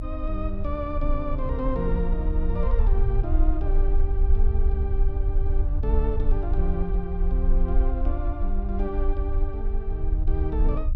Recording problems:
rumble; below 54 Hz, strongest tone 26 Hz, SNR -5 dB

